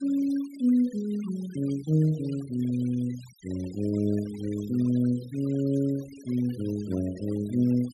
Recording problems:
denoising artefacts; signal-to-artefact ratio 21 dB

